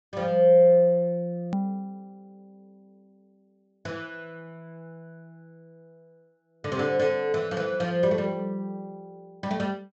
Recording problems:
treble missing; nothing above 7.9 kHz
edit click; at 1.5 s

